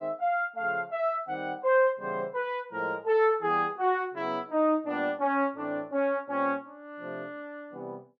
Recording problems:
none

